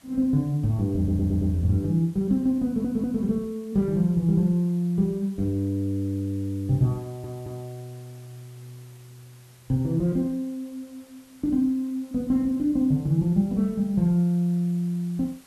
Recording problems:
background hiss; slope -2 dB per octave, SNR 29 dB
stutter; at 1 s, at 2.5 s and at 7 s

